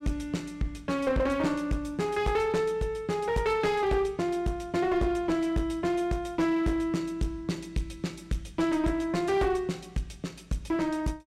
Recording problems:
distorted audio; hard clipping, uneven, signal-to-distortion ratio 10 dB

